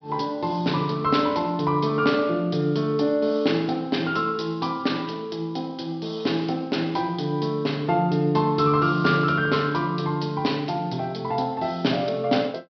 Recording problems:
treble cut off; nothing above 5.5 kHz

